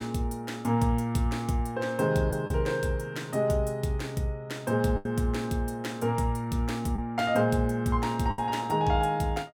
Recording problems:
lost packets; 2% of the sound replaced, filled with the last packet

